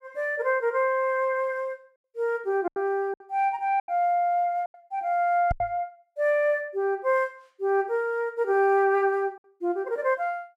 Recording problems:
packet loss; 4% of the sound replaced, filled with silence
knock on the microphone; at 5.5 s; peak -1 dB vs average level

